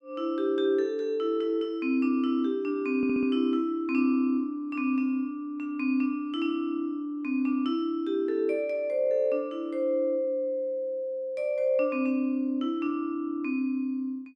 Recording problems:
stutter; at 3 s

